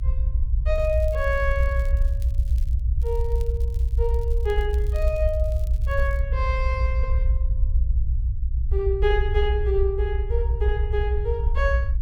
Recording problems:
low-frequency rumble; below 64 Hz, SNR -3 dB
crackle; from 0.5 to 3 s and from 3 to 6 s; loose cable, SNR 25 dB

